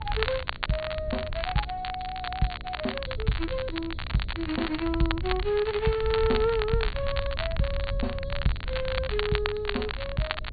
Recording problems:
treble missing; nothing above 4.5 kHz
electrical hum; 60 Hz, harmonics up to 660 Hz, SNR 18 dB
wind noise; below 82 Hz, SNR 7 dB
crackling; vinyl, SNR 6 dB

